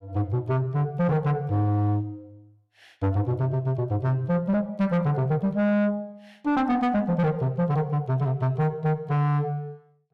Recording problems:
distortion; soft clipping, signal-to-distortion ratio 6 dB

